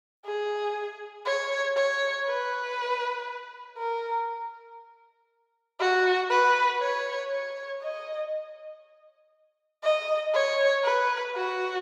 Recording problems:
none

